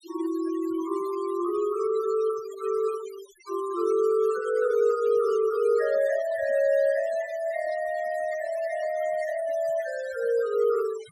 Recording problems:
noise reduction artefacts; signal-to-artefact ratio 21 dB

